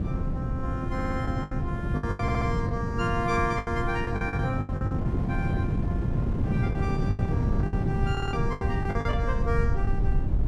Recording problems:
hum; 60 Hz, harmonics up to 720 Hz, SNR 10 dB
low-frequency rumble; below 74 Hz, SNR 4 dB
wind on the microphone; below 210 Hz, SNR -3 dB
packet loss; 11% of the sound replaced, filled with the last packet
audio stuttering; at 1 s, at 2 s and at 8 s

